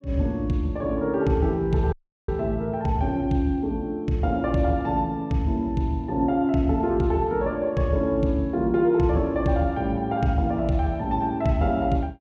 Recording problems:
dropout; at 2 s

